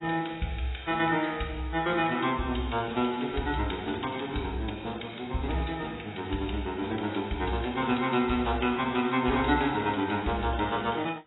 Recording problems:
codec artefacts; AAC, log-spectral distance 7 dB, nothing above 3.8 kHz

